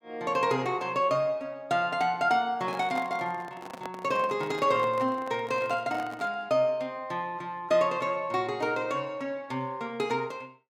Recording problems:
handling noise; from 2.5 to 6.5 s; peak -6 dB vs average level

